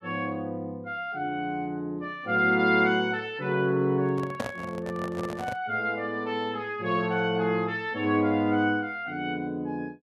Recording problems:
microphone handling noise; from 4 to 5.5 s; peak 0 dB vs average level

